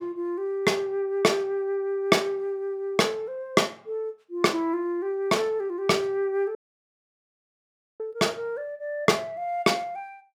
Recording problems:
dropout; at 6.5 s for 1.5 s

